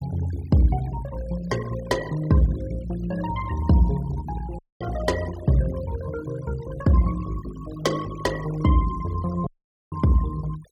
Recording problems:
denoising artefacts; signal-to-artefact ratio 18 dB
dropout; at 4.5 s and at 9.5 s

